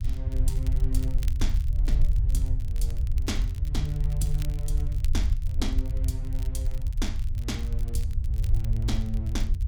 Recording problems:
rumble; below 66 Hz, SNR -7 dB
crackling; vinyl, SNR 16 dB

